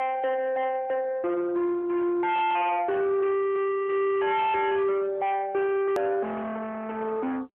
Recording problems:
telephone audio; 990 Hz to 2.2 kHz, AMR-NB
distortion; soft clipping, signal-to-distortion ratio 7 dB
hard cut with a click; at 6 s

